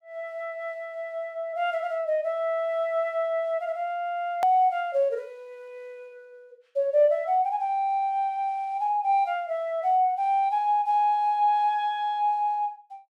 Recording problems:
click at an edit; at 4.5 s

